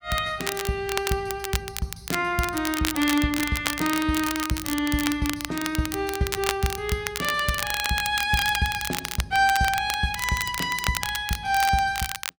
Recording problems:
crackling; vinyl, SNR 6 dB

